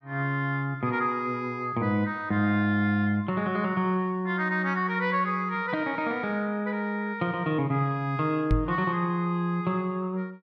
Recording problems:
microphone thump; at 8.5 s; peak +5 dB vs average level

